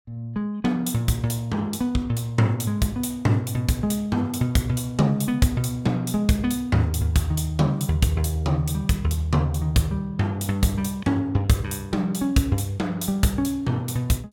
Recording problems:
none

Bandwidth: 17.5 kHz